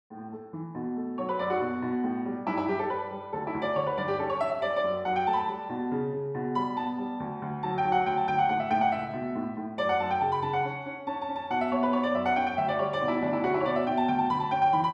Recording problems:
none

